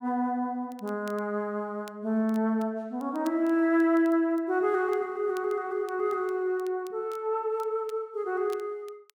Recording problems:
crackle; vinyl, SNR 28 dB

